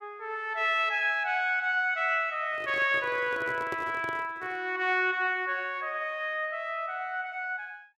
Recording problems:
handling noise; from 2.5 to 4.5 s; peak -5 dB vs average level

